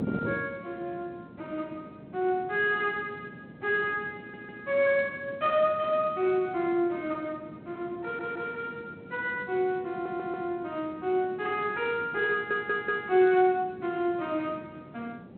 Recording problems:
telephone audio; 220 Hz to 3.3 kHz, G.726
wind noise; below 400 Hz, SNR 17 dB
audio stuttering; 4 times, first at 4 s

